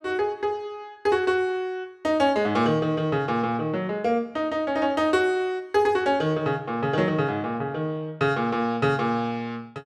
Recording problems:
none

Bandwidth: 12.5 kHz